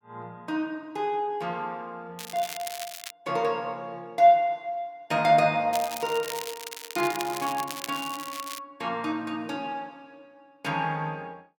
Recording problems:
crackle; at 2 s and from 5.5 to 8.5 s; loose cable, SNR 10 dB

